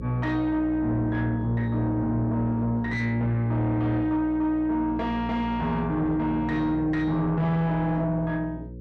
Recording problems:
distortion; soft clipping, signal-to-distortion ratio 11 dB
hum; 60 Hz, harmonics up to 540 Hz, SNR 10 dB

